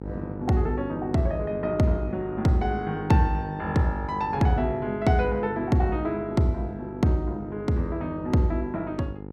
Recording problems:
electrical hum; 50 Hz, harmonics up to 1 kHz, SNR 11 dB

